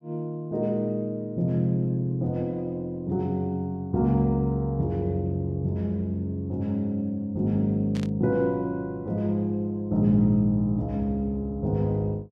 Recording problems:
burst of static; at 8 s; peak -11 dB vs average level

